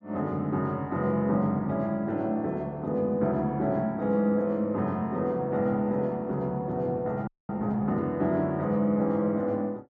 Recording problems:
frozen audio; at 7.5 s

